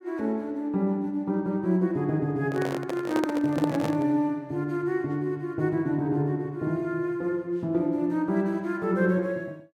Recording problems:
microphone handling noise; from 2.5 to 4 s; peak +1 dB vs average level

